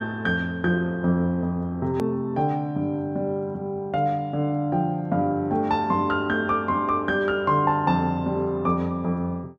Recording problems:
click at an edit; at 2 s

